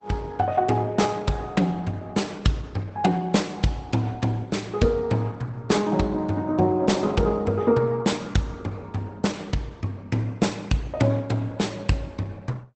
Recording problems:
lossy compression; Opus, log-spectral distance 3 dB, nothing above 8 kHz

